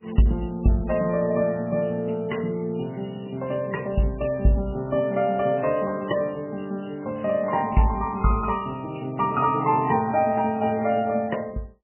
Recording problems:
codec artefacts; MP3, log-spectral distance 5 dB, nothing above 2.5 kHz

